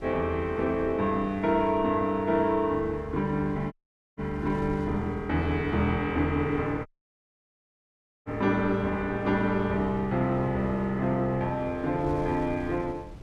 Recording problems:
wind on the microphone; below 260 Hz, SNR 18 dB
dropout; at 3.5 s and at 7 s for 1.5 s

